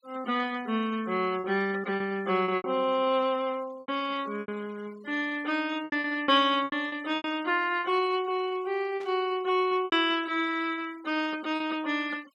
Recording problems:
noise reduction artefacts; signal-to-artefact ratio 23 dB
packet loss; 8% of the sound replaced, filled with repeated pitch periods
static burst; at 9 s; peak -17 dB vs average level

